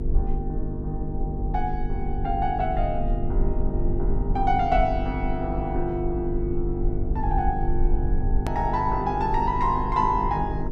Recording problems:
mains hum; 50 Hz, harmonics up to 450 Hz, SNR 5 dB
low-frequency rumble; below 54 Hz, strongest tone 20 Hz, SNR 4 dB
click at an edit; at 8.5 s

